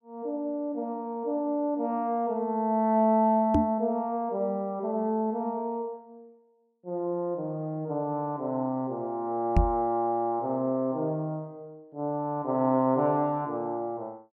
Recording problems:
knock on the microphone; at 3.5 s and at 9.5 s; peak +8 dB vs average level

